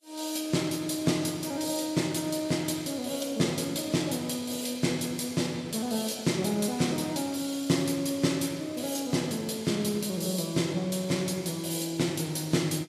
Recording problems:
lossy codec; Vorbis, log-spectral distance 5 dB, nothing above 13.1 kHz

